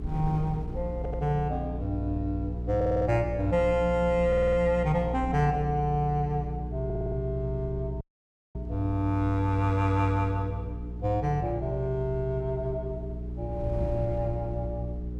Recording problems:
hum; 60 Hz, harmonics up to 420 Hz, SNR 7 dB
wind noise; below 120 Hz, SNR 16 dB
stutter; 4 times, first at 1 s
dropout; at 8 s for 0.5 s

